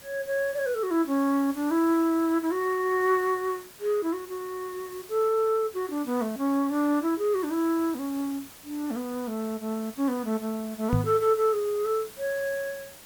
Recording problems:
hiss; slope -2 dB per octave, SNR 18 dB
microphone thump; at 11 s; peak +6 dB vs average level

